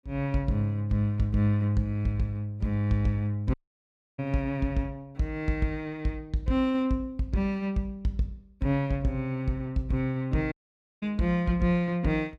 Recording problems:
dropout; at 3.5 s for 0.5 s and at 11 s for 0.5 s

